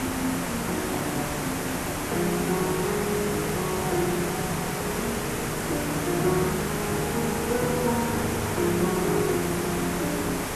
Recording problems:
hiss; slope -5 dB per octave, SNR 1 dB

